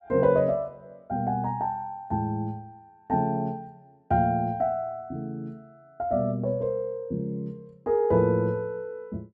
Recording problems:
none

